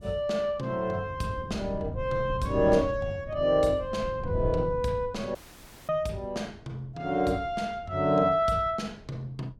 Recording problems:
wind noise; below 150 Hz, SNR 10 dB
audio cutting out; at 5.5 s for 0.5 s

